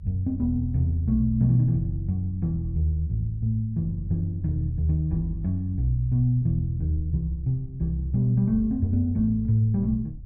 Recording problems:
rumble; below 92 Hz, SNR 18 dB

